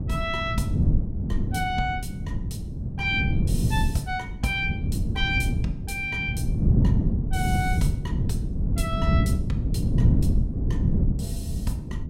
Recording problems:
wind noise; below 170 Hz, SNR -3 dB

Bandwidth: 16.5 kHz